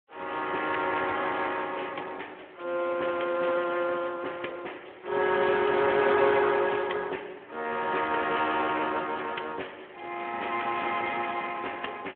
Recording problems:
phone line; 300 Hz to 3.4 kHz, Speex

